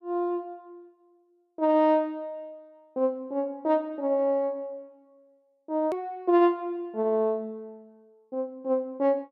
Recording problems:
edit click; at 6 s

